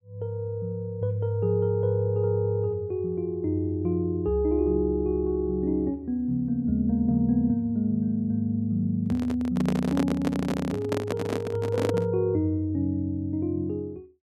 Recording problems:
microphone handling noise; from 9 to 12 s; peak +1 dB vs average level

